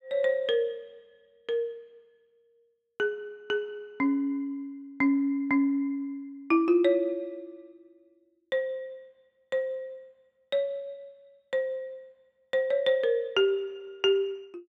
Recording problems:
none

